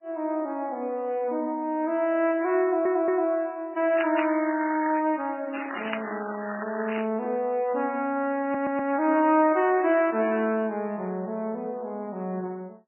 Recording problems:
lossy compression; MP3, then MP3, log-spectral distance 5 dB, nothing above 2.7 kHz
audio stuttering; at 2.5 s and at 8.5 s
crackling; from 4 to 5 s and from 5.5 to 7 s; loose cable, SNR 9 dB
handling noise; from 5.5 to 7.5 s; peak -10 dB vs average level

